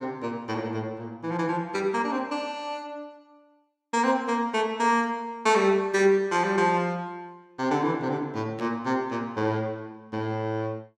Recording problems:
burst of static; at 8.5 s; peak -14 dB vs average level

